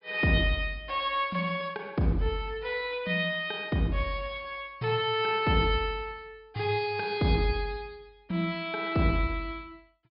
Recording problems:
treble cut off; nothing above 5.5 kHz

